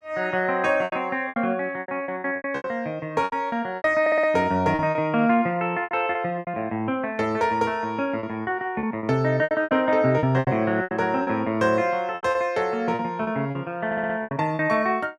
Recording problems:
lost packets; 13% of the sound replaced, filled with repeated pitch periods
stutter; at 4 s and at 14 s

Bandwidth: 13 kHz